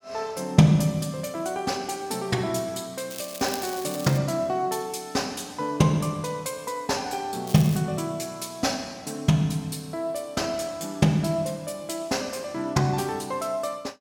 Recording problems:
crackling; from 3 to 4 s and at 7.5 s; loose cable, SNR 12 dB

